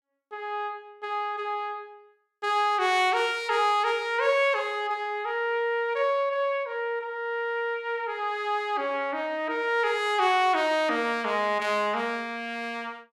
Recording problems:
none

